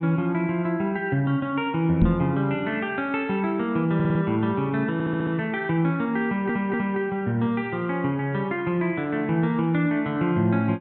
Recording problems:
low-pass filter; nothing above 4.1 kHz
knock on the microphone; at 2 s; peak +5 dB vs average level
audio stuttering; at 4 s, at 5 s and at 6.5 s

